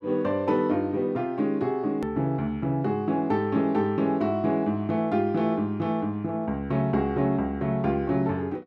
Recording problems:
hard cut with a click; at 2 s

